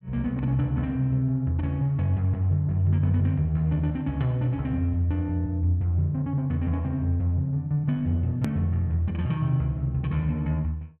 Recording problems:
edit click; at 8.5 s

